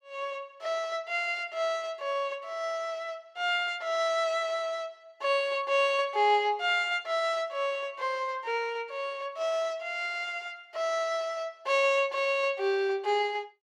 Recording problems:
none

